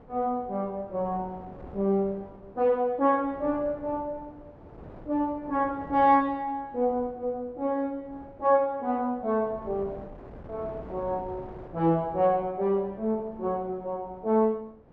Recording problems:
wind noise; below 590 Hz, SNR 20 dB

